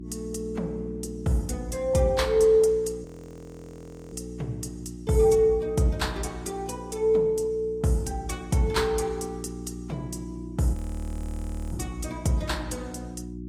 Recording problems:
codec artefacts; AAC, log-spectral distance 2 dB
hum; 60 Hz, harmonics up to 360 Hz, SNR 13 dB
frozen audio; at 3 s for 1 s and at 11 s for 1 s

